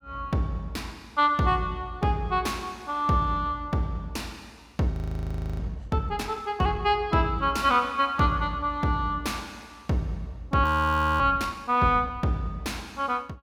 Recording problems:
audio freezing; at 5 s for 0.5 s and at 11 s for 0.5 s

